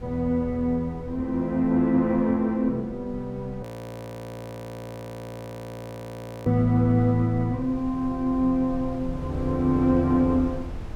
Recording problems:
wind on the microphone; below 130 Hz, SNR 17 dB
frozen audio; at 3.5 s for 3 s

